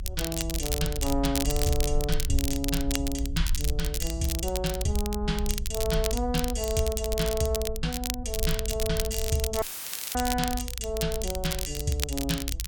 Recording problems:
rumble; below 60 Hz, SNR 4 dB
crackling; vinyl, SNR 4 dB
audio cutting out; at 9.5 s for 0.5 s; filled with static

